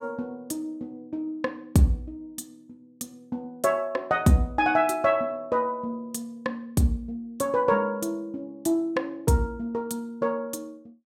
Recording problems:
none

